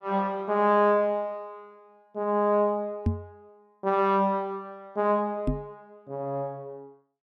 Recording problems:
microphone thump; at 3 s and at 5.5 s; peak +4 dB vs average level

